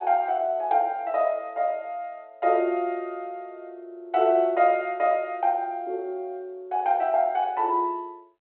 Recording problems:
telephone audio; 300 Hz to 3.1 kHz, G.726

